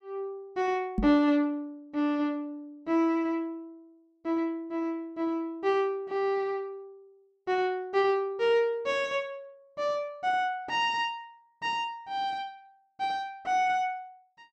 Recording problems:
knock on the microphone; at 1 s; peak +4 dB vs average level

